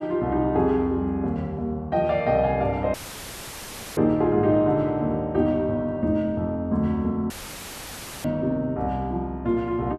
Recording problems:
audio cutting out; at 3 s for 1 s and at 7.5 s for 1 s; filled with static

